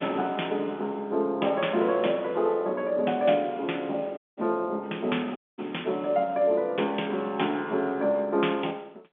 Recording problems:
phone line; 220 Hz to 3.5 kHz, G.711
audio cutting out; at 4 s and at 5.5 s

